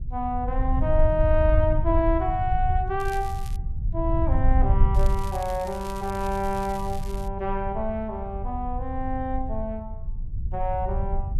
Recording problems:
rumble; below 72 Hz, SNR 1 dB
crackle; at 3 s and from 5 to 7.5 s; loose cable, SNR 18 dB

